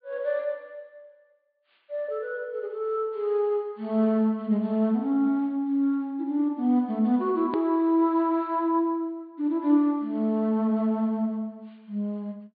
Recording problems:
low-pass filter; nothing above 4.7 kHz
hard cut with a click; at 7.5 s

